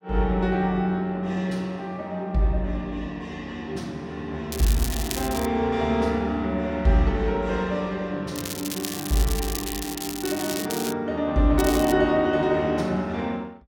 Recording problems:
crackling; at 4.5 s, from 8.5 to 11 s and at 12 s; loose cable, SNR 7 dB

